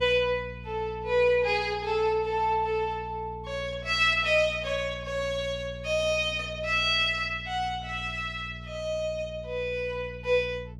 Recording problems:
hum; 60 Hz, harmonics up to 480 Hz, SNR 16 dB

